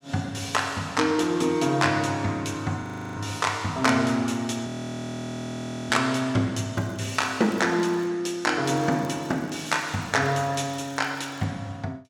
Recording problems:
audio freezing; at 3 s and at 4.5 s for 1 s
crackling; from 6.5 to 8 s and from 8.5 to 11 s; loose cable, SNR 28 dB

